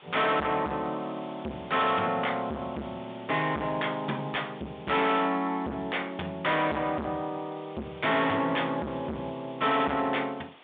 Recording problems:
phone line; 130 Hz to 3.7 kHz, G.726
distorted audio; hard clipping, signal-to-distortion ratio 4 dB
hiss; SNR 22 dB

